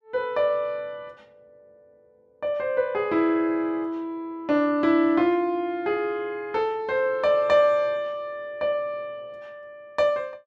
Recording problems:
none

